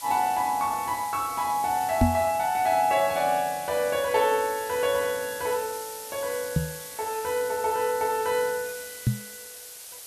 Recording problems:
hiss; SNR 12 dB
microphone bump; at 2 s, at 6.5 s and at 9 s; peak +8 dB vs average level

